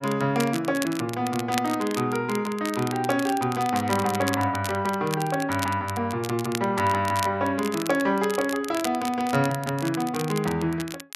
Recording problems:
crackling; vinyl, SNR 12 dB

